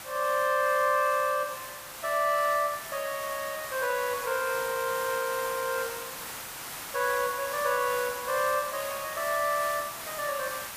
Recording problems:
hiss; SNR 9 dB

